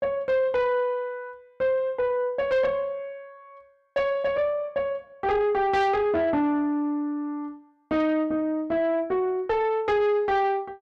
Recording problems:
distorted audio; soft clipping, signal-to-distortion ratio 11 dB

